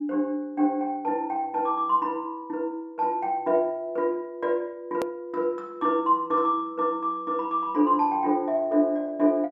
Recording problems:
click at an edit; at 5 s

